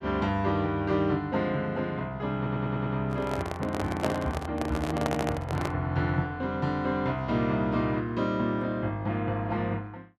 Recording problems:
audio stuttering; at 2.5 s and at 5 s
handling noise; from 3 to 5.5 s; peak +3 dB vs average level

